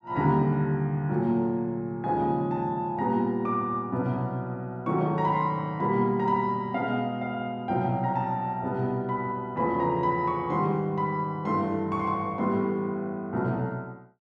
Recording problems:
none

